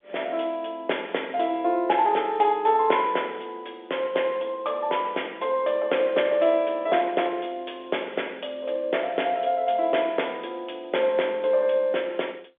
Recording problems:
phone line; 320 Hz to 3.6 kHz, G.711

